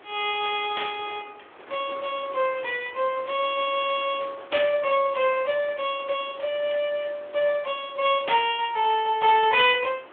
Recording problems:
phone line; 320 Hz to 3.4 kHz, Speex
wind on the microphone; below 1.9 kHz, SNR 21 dB

